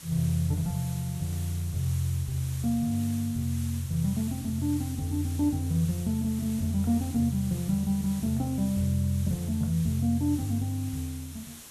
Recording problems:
hiss; slope 0 dB per octave, SNR 15 dB

